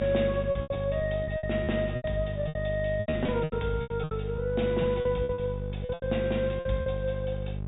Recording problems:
treble cut off; nothing above 4 kHz
electrical hum; 50 Hz, harmonics up to 650 Hz, SNR 5 dB
packet loss; 15% of the sound replaced, filled with repeated pitch periods

